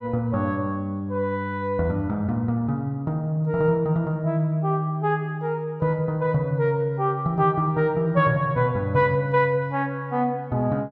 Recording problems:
none

